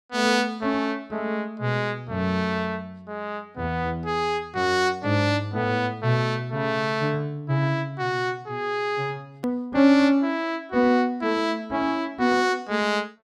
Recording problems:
click at an edit; at 9.5 s

